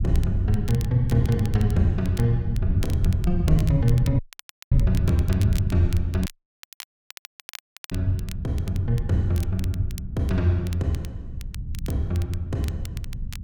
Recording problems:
rumble; below 110 Hz, SNR 4 dB
wind on the microphone; below 160 Hz, SNR 23 dB
crackle; vinyl, SNR 19 dB
dropout; at 4 s for 0.5 s and at 6.5 s for 1.5 s

